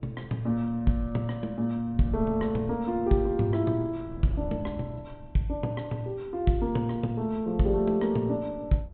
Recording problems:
low-pass filter; nothing above 4 kHz
wind on the microphone; below 150 Hz, SNR 16 dB

